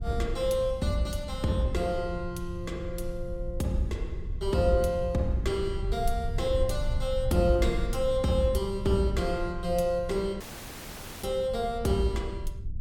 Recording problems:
low-frequency rumble; below 78 Hz, SNR 8 dB
dropout; at 10 s for 1 s

